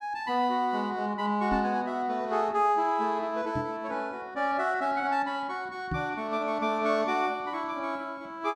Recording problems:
microphone bump; at 1.5 s, at 3.5 s and at 6 s; peak -1 dB vs average level

